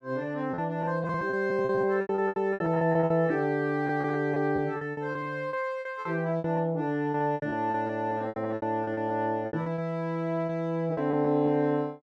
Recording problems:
lost packets; 16% of the sound replaced, filled with repeated pitch periods

